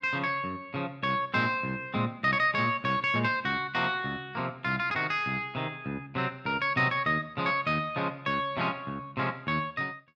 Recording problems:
none

